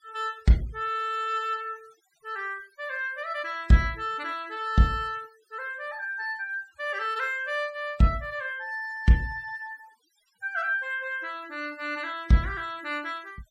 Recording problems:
noise reduction artefacts; signal-to-artefact ratio 26 dB

